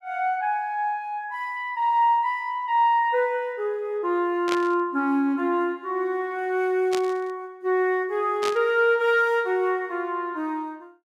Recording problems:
static burst; at 4.5 s, at 7 s and at 8.5 s; peak -2 dB vs average level

